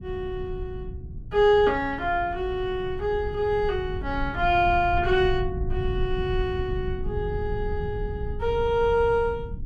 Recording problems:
rumble; below 100 Hz, SNR 9 dB

